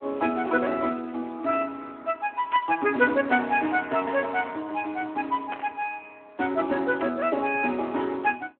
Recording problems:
phone line; 220 Hz to 3.3 kHz, Speex
static burst; at 2.5 s, at 5.5 s and at 7 s; peak -7 dB vs average level

